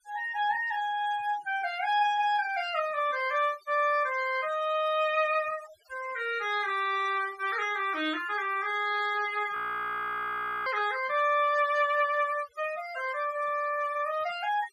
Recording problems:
noise reduction artefacts; signal-to-artefact ratio 18 dB
frozen audio; at 9.5 s for 1 s

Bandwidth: 14 kHz